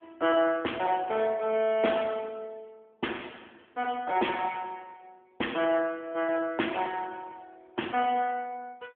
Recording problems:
phone line; 240 Hz to 3.4 kHz, AMR-NB

